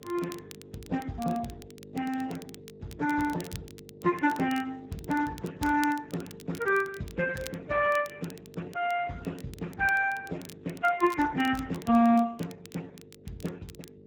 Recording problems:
lossy compression; MP3, then Speex, log-spectral distance 5 dB
mains hum; 50 Hz, harmonics up to 600 Hz, SNR 21 dB
crackle; vinyl, SNR 21 dB

